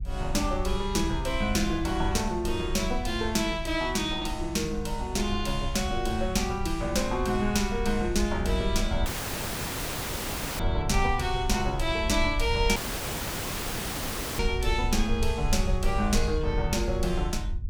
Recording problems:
rumble; below 66 Hz, SNR 6 dB
audio cutting out; at 9 s for 1.5 s and at 13 s for 1.5 s

